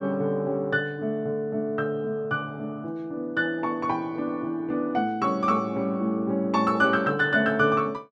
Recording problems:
none

